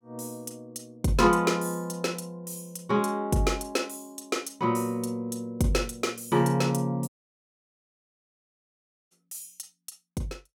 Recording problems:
audio cutting out; at 7 s for 2 s

